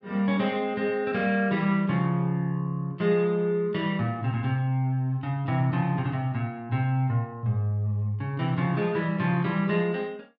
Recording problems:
none

